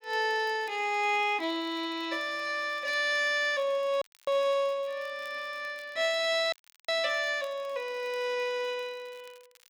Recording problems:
crackling; vinyl, SNR 29 dB
audio cutting out; at 4 s and at 6.5 s

